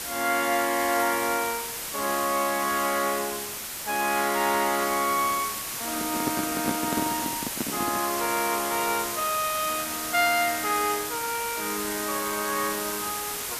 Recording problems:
hiss; slope 0 dB per octave, SNR 3 dB
microphone handling noise; from 6 to 8 s; peak +2 dB vs average level

